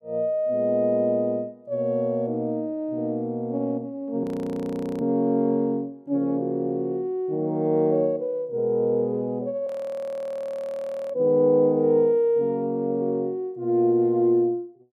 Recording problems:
frozen audio; at 4 s for 1 s and at 9.5 s for 1.5 s

